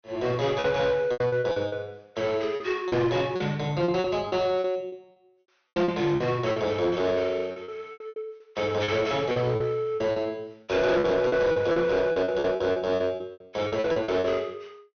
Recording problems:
treble cut off; nothing above 6.3 kHz
distorted audio; hard clipping, uneven, signal-to-distortion ratio 11 dB
packet loss; 14% of the sound replaced, filled with repeated pitch periods

